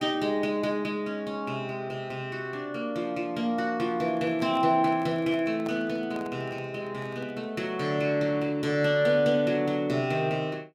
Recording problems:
handling noise; from 4 to 7.5 s; peak -8 dB vs average level

